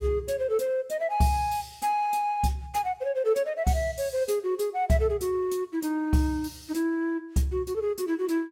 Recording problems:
none

